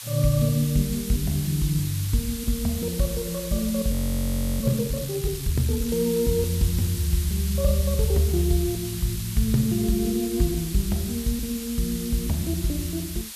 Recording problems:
background hiss; slope +3 dB per octave, SNR 9 dB
frozen audio; at 4 s for 0.5 s

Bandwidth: 14 kHz